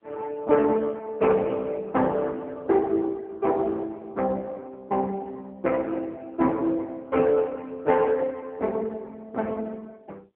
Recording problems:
phone line; 280 Hz to 2.6 kHz, AMR-NB

